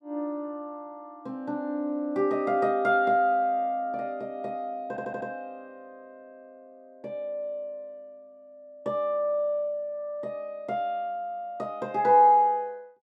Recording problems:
audio stuttering; at 5 s

